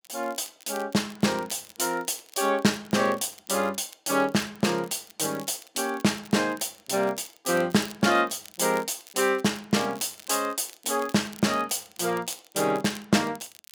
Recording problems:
crackling; vinyl, SNR 21 dB

